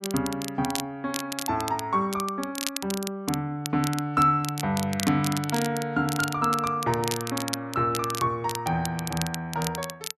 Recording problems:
crackle; vinyl, SNR 8 dB

